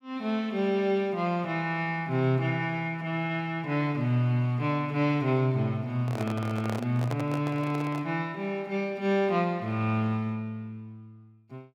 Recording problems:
microphone handling noise; from 6 to 8 s; peak -3 dB vs average level

